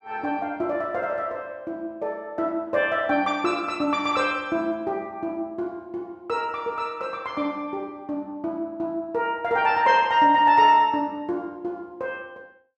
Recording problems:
none

